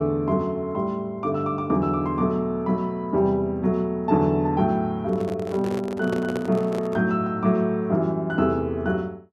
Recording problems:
microphone handling noise; from 5 to 7 s; peak -3 dB vs average level

